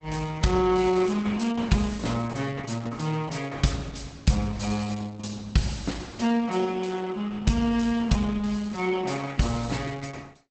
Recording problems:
lossy codec; Opus, log-spectral distance 5 dB, nothing above 8 kHz

